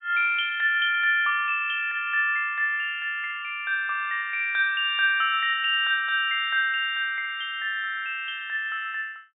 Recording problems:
treble cut off; nothing above 4 kHz

